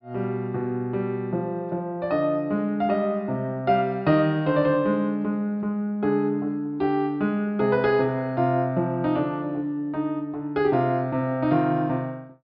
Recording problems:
low-pass filter; nothing above 5.5 kHz

